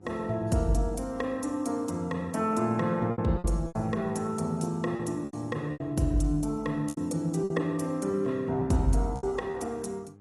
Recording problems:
lossy compression; AAC, log-spectral distance 2 dB, nothing above 11 kHz
hum; 50 Hz, harmonics up to 900 Hz, SNR 25 dB
lost packets; 7% of the sound replaced, filled with repeated pitch periods

